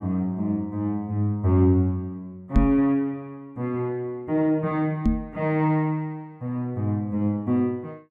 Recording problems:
knock on the microphone; at 2.5 s and at 5 s; peak +8 dB vs average level

